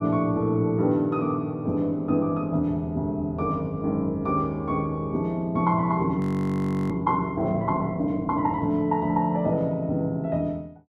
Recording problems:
frozen audio; at 6 s for 0.5 s

